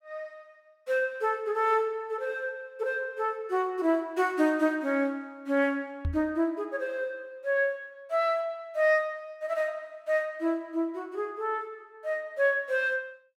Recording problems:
knock on the microphone; at 6 s; peak +1 dB vs average level

